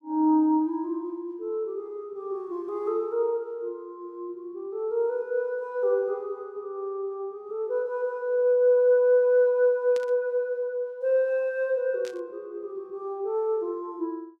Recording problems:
burst of static; at 10 s and at 12 s; peak -12 dB vs average level

